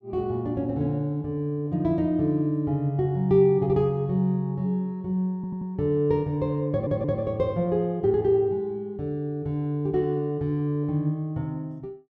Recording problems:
stutter; at 5.5 s and at 6.5 s

